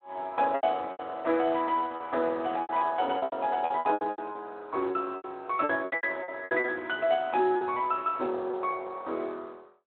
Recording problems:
telephone audio; 320 Hz to 3.3 kHz, Speex
lost packets; 15% of the sound replaced, filled with repeated pitch periods

